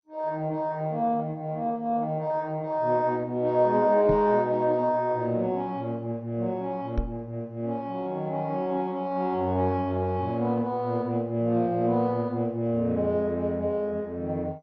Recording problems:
codec artefacts; MP2, log-spectral distance 2 dB, nothing above 5.3 kHz
knock on the microphone; at 4 s and at 7 s; peak +2 dB vs average level

